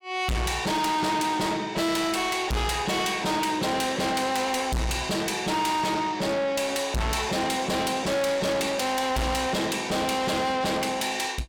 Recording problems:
distortion; soft clipping, signal-to-distortion ratio 6 dB

